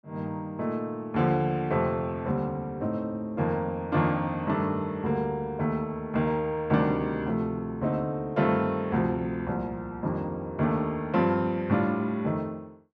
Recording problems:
none

